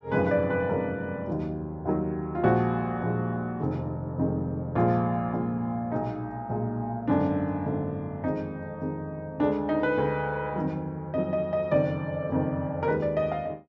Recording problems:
treble missing; nothing above 8 kHz

